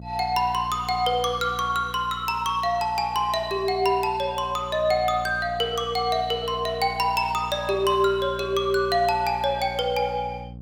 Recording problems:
mains hum; 60 Hz, harmonics up to 540 Hz, SNR 16 dB

